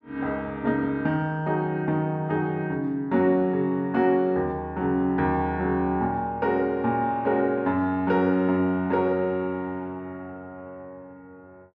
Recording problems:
none

